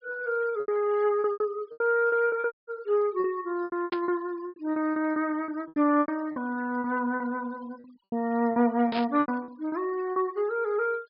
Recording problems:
low-pass filter; nothing above 5.5 kHz
noise reduction artefacts; signal-to-artefact ratio 25 dB
lost packets; 14% of the sound replaced, filled with repeated pitch periods
audio cutting out; at 2.5 s
static burst; at 4 s and at 9 s; peak -4 dB vs average level

